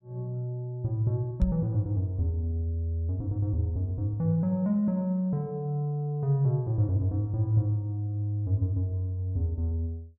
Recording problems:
microphone thump; at 1.5 s; peak +6 dB vs average level

